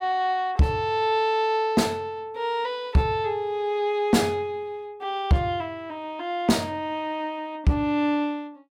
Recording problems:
distorted audio; soft clipping, signal-to-distortion ratio 11 dB

